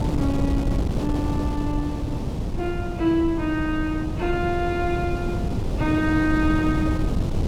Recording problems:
wind on the microphone; below 230 Hz, SNR 1 dB

